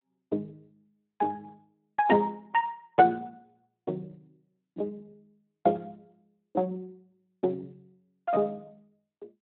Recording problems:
phone line; 260 Hz to 3 kHz, Speex

